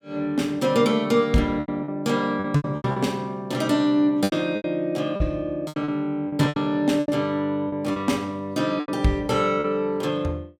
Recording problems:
packet loss; 10% of the sound replaced, filled with repeated pitch periods

